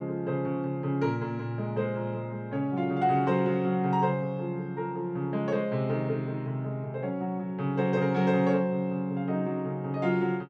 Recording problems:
none

